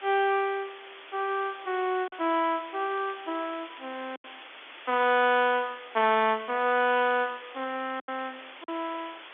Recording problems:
phone line; 240 Hz to 3.5 kHz, G.711
background hiss; SNR 17 dB
lost packets; 3% of the sound replaced, filled with silence
crackling; from 3 to 5 s and from 6 to 8 s; loose cable, SNR 27 dB

